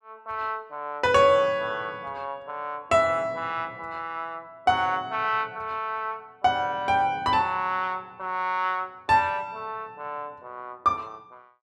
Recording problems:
none

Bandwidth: 12.5 kHz